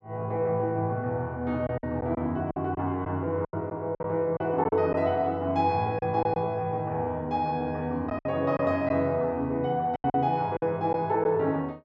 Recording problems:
lost packets; 7% of the sound replaced, filled with silence

